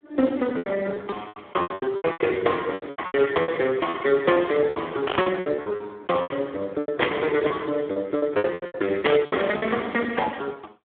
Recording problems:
phone line; 300 Hz to 3.4 kHz, Speex
lost packets; 16% of the sound replaced, filled with repeated pitch periods
burst of static; 4 times, first at 3 s; peak +4 dB vs average level

